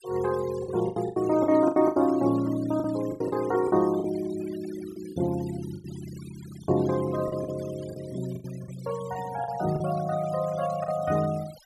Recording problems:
denoising artefacts; signal-to-artefact ratio 19 dB
lost packets; 10% of the sound replaced, filled with the last packet

